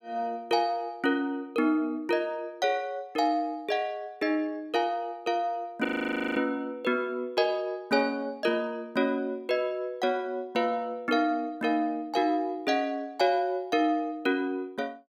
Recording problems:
frozen audio; at 6 s for 0.5 s

